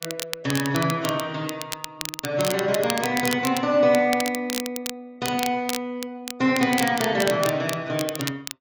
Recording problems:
lossy compression; AAC, log-spectral distance 2 dB
crackling; vinyl, SNR 8 dB

